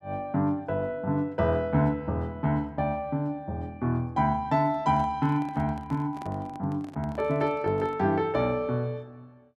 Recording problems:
microphone handling noise; from 4.5 to 8 s; peak -12 dB vs average level

